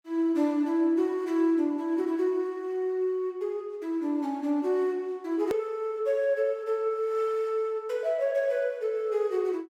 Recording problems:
click at an edit; at 5.5 s

